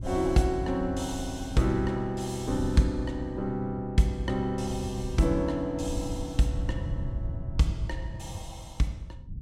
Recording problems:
wind noise; below 120 Hz, SNR 9 dB

